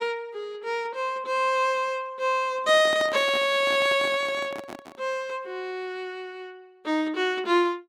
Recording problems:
microphone handling noise; from 2.5 to 5 s; peak -6 dB vs average level

